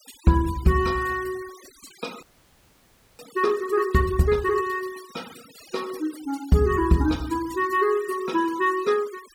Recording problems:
noise reduction artefacts; signal-to-artefact ratio 21 dB
frozen audio; at 2 s for 1 s

